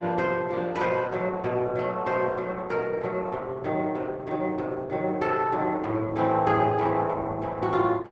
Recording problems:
lossy compression; Opus, log-spectral distance 3 dB, nothing above 7.8 kHz

